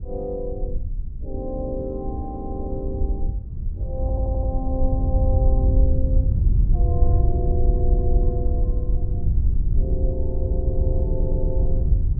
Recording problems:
low-frequency rumble; below 62 Hz, SNR 3 dB
wind noise; below 78 Hz, SNR -8 dB
stutter; at 4 s, at 7.5 s and at 11 s

